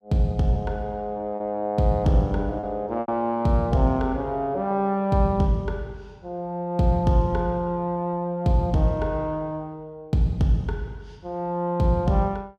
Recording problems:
packet loss; 1.5% of the sound replaced, filled with repeated pitch periods

